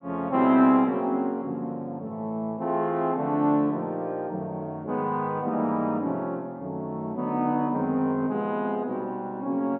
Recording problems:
low-pass filter; nothing above 4.1 kHz

